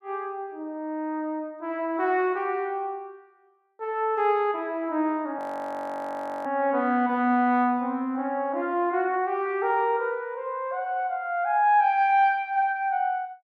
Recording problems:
frozen audio; at 5.5 s for 1 s

